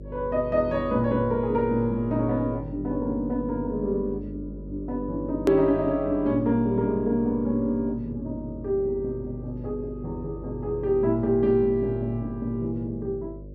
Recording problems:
electrical hum; 50 Hz, harmonics up to 600 Hz, SNR 14 dB
click at an edit; at 5.5 s

